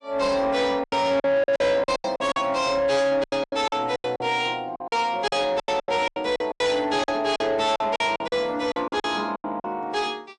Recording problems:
lossy codec; MP3, log-spectral distance 2 dB, nothing above 9.5 kHz
distorted audio; soft clipping, signal-to-distortion ratio 11 dB
lost packets; 16% of the sound replaced, filled with silence

